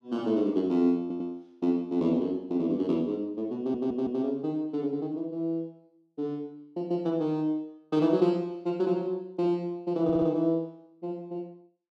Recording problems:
audio stuttering; at 1 s, at 3.5 s and at 10 s

